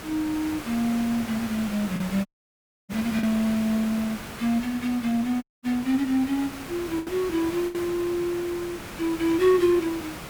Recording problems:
background hiss; slope -4 dB per octave, SNR 11 dB
lost packets; 3% of the sound replaced, filled with the last packet
dropout; at 2.5 s for 0.5 s and at 5.5 s

